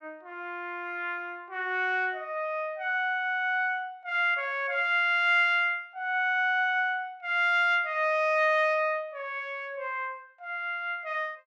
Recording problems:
none

